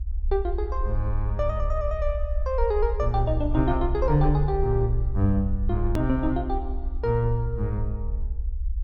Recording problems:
rumble; below 64 Hz, strongest tone 30 Hz, SNR 3 dB
edit click; at 6 s

